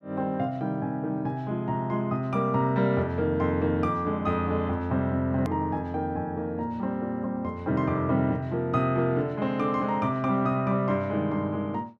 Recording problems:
hard cut with a click; at 5.5 s

